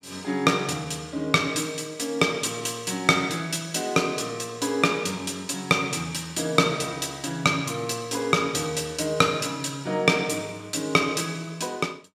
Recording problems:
none

